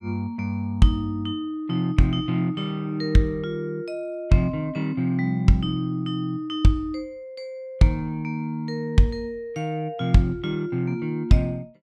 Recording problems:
none

